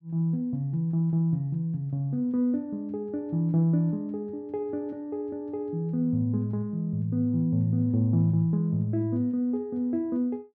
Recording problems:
none

